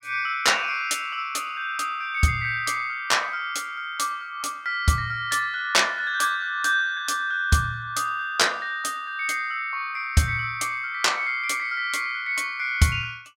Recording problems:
none

